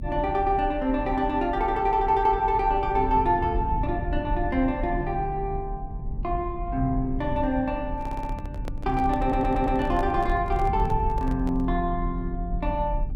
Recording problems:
low-frequency rumble; below 84 Hz, strongest tone 36 Hz, SNR 7 dB
handling noise; from 8 to 12 s; peak -7 dB vs average level
audio stuttering; at 8 s and at 9 s

